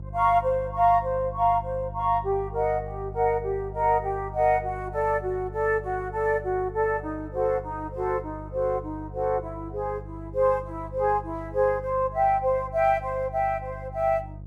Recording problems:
hum; 50 Hz, harmonics up to 500 Hz, SNR 14 dB

